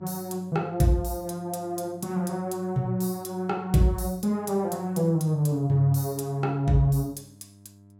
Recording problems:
electrical hum; 50 Hz, harmonics up to 700 Hz, SNR 25 dB

